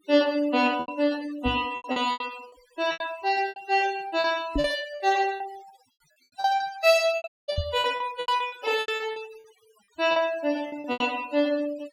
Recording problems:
noise reduction artefacts; signal-to-artefact ratio 18 dB
lost packets; 15% of the sound replaced, filled with repeated pitch periods
microphone bump; at 1.5 s, at 4.5 s and at 7.5 s; peak +2 dB vs average level
audio cutting out; at 7.5 s

